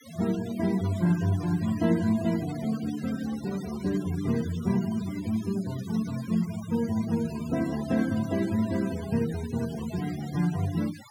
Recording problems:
denoising artefacts; signal-to-artefact ratio 16 dB

